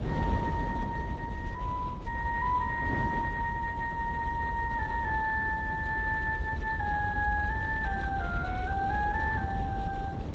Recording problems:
lossy compression; Opus, then Speex, log-spectral distance 3 dB, nothing above 7.8 kHz
low-frequency rumble; below 86 Hz, SNR 5 dB
wind on the microphone; below 430 Hz, SNR 7 dB

